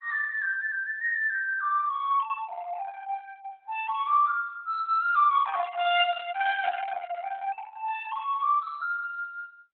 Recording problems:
lossy codec; Opus, log-spectral distance 2 dB

